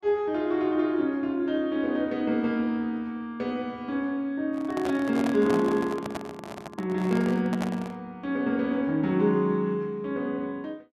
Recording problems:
handling noise; from 4.5 to 8 s; peak -2 dB vs average level

